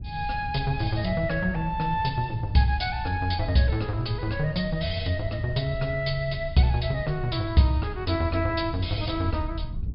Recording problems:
treble cut off; nothing above 5.5 kHz
wind noise; below 100 Hz, SNR 10 dB

